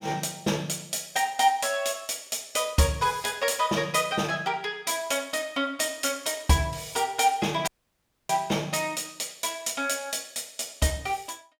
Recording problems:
dropout; at 7.5 s for 0.5 s

